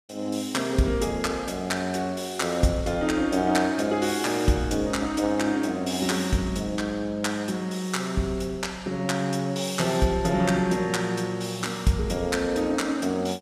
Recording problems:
none

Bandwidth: 15 kHz